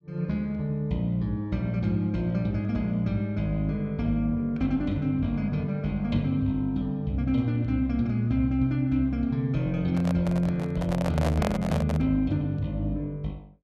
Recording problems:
microphone handling noise; from 10 to 12 s; peak +1 dB vs average level

